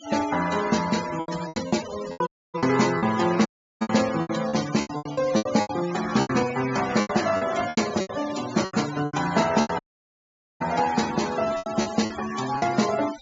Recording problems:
treble cut off; nothing above 7.3 kHz
noise reduction artefacts; signal-to-artefact ratio 11 dB
packet loss; 15% of the sound replaced, filled with repeated pitch periods
dropout; at 2.5 s, at 3.5 s and at 10 s for 1 s

